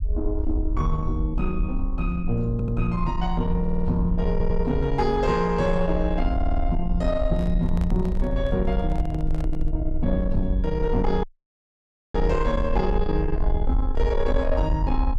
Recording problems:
distortion; soft clipping, signal-to-distortion ratio 12 dB
rumble; below 58 Hz, SNR 3 dB
audio stuttering; 4 times, first at 2.5 s
microphone handling noise; from 7.5 to 9.5 s; peak -9 dB vs average level
audio cutting out; at 11 s for 1 s

